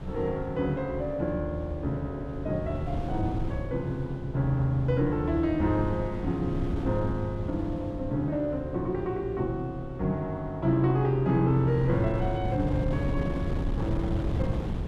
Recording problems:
wind noise; below 190 Hz, SNR 7 dB

